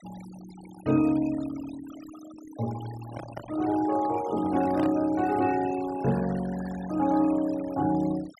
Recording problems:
noise reduction artefacts; signal-to-artefact ratio 18 dB
handling noise; from 3 to 5 s; peak -5 dB vs average level

